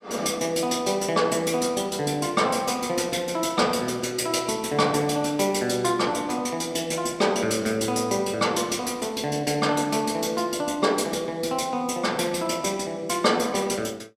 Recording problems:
none

